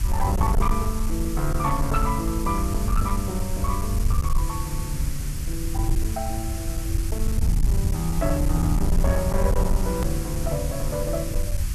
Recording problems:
distorted audio; hard clipping, uneven, signal-to-distortion ratio 11 dB
electrical hum; 60 Hz, harmonics up to 360 Hz, SNR 15 dB
background hiss; SNR 8 dB
low-frequency rumble; below 78 Hz, SNR -1 dB
edit click; at 10 s

